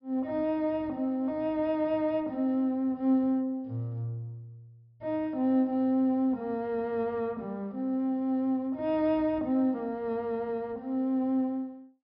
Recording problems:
low-pass filter; nothing above 5.5 kHz

